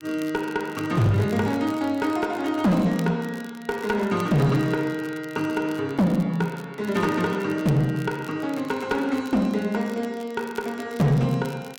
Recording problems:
distorted audio; hard clipping, uneven, signal-to-distortion ratio 11 dB
crackle; vinyl, SNR 23 dB

